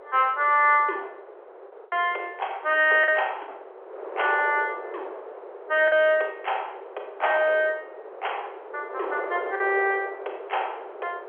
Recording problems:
telephone audio; 340 Hz to 3.4 kHz, G.711
wind noise; below 780 Hz, SNR 15 dB
lost packets; 2% of the sound replaced, filled with the last packet

